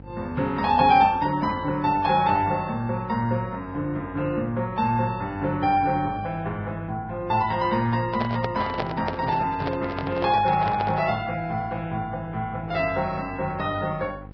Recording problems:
lossy compression; Vorbis, log-spectral distance 2 dB
hum; 50 Hz, harmonics up to 800 Hz, SNR 18 dB
microphone handling noise; from 8 to 11 s; peak 0 dB vs average level

